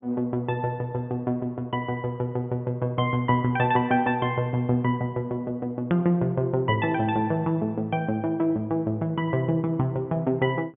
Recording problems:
low-pass filter; nothing above 3.5 kHz
hard cut with a click; at 6 s

